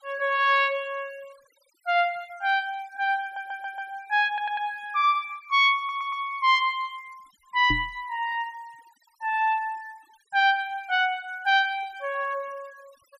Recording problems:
noise reduction artefacts; signal-to-artefact ratio 27 dB
stutter; at 3 s, at 4.5 s and at 6 s
microphone bump; at 7.5 s; peak -2 dB vs average level

